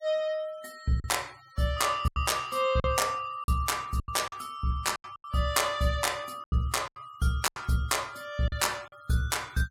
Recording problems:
denoising artefacts; signal-to-artefact ratio 24 dB
packet loss; 9% of the sound replaced, filled with silence

